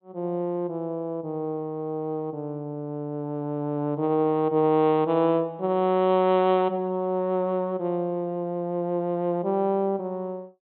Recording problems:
treble missing; nothing above 4 kHz

